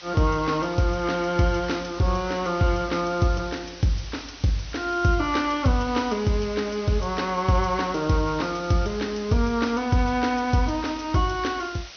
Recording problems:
treble missing; nothing above 6.2 kHz
hiss; slope +1 dB per octave, SNR 16 dB

